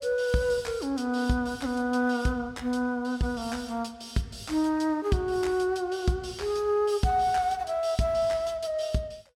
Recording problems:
none

